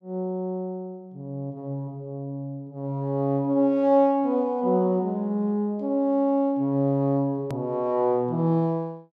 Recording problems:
click at an edit; at 7.5 s

